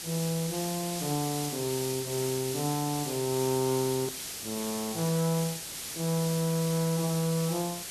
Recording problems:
background hiss; SNR 5 dB
click at an edit; at 4 s

